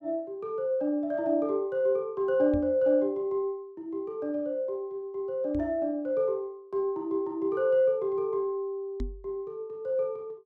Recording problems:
microphone bump; at 2.5 s, at 5.5 s and at 9 s; peak -3 dB vs average level

